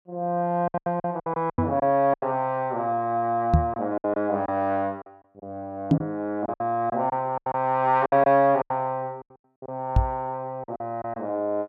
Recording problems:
packet loss; 11% of the sound replaced, filled with silence
knock on the microphone; 4 times, first at 1.5 s; peak +9 dB vs average level

